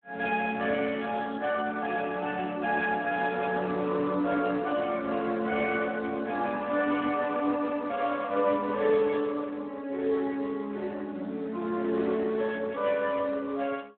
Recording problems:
phone line; 220 Hz to 3.5 kHz, Speex

